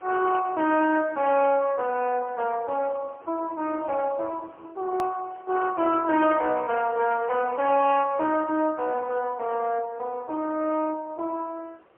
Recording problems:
phone line; 280 Hz to 3.1 kHz, AMR-NB, then MP3
distorted audio; soft clipping, signal-to-distortion ratio 11 dB
background hiss; SNR 29 dB
hard cut with a click; at 5 s

